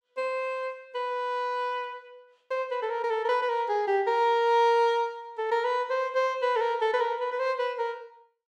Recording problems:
none

